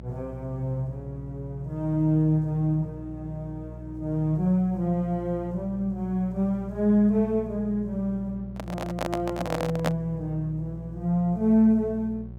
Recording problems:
hum; 60 Hz, harmonics up to 600 Hz, SNR 14 dB
microphone handling noise; from 8.5 to 10 s; peak +3 dB vs average level

